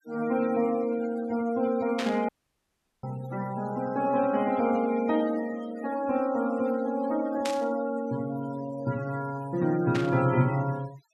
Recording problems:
denoising artefacts; signal-to-artefact ratio 17 dB
static burst; at 2 s, at 7.5 s and at 10 s; peak -2 dB vs average level
audio cutting out; at 2.5 s for 0.5 s

